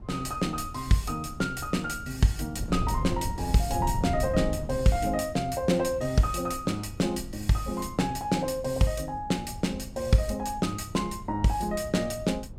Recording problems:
wind noise; below 130 Hz, SNR 10 dB

